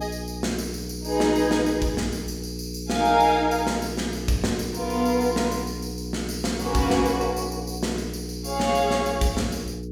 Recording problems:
hum; 60 Hz, harmonics up to 480 Hz, SNR 9 dB

